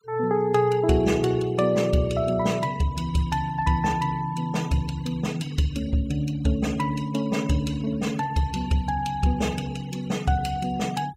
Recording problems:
noise reduction artefacts; signal-to-artefact ratio 20 dB

